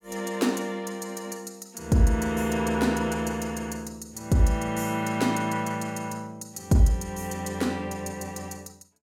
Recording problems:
none

